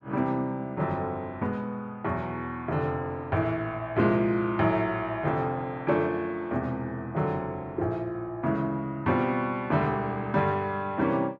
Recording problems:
none

